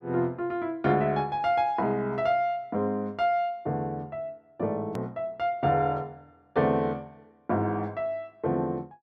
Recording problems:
hard cut with a click; at 5 s

